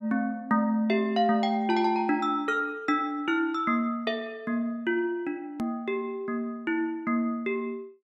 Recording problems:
hard cut with a click; at 5.5 s

